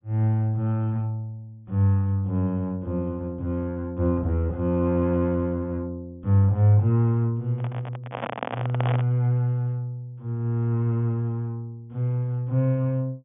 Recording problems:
treble cut off; nothing above 3.5 kHz
handling noise; from 7.5 to 9 s; peak -1 dB vs average level

